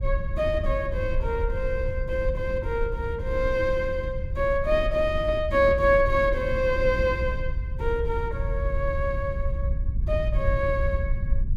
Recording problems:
low-frequency rumble; below 76 Hz, SNR 5 dB

